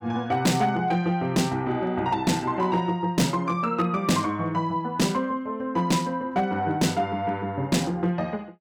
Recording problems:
distorted audio; hard clipping, signal-to-distortion ratio 10 dB

